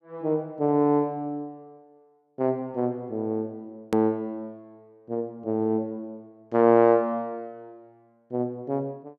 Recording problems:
click at an edit; at 4 s

